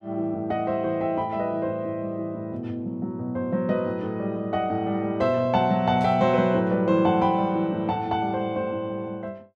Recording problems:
burst of static; at 6 s; peak -17 dB vs average level

